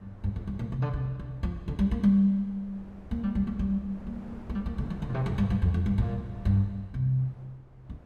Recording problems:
wind noise; below 340 Hz, SNR 21 dB

